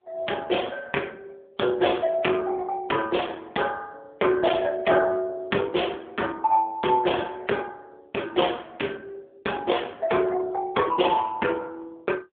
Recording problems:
telephone audio; 240 Hz to 3.6 kHz, AMR-NB

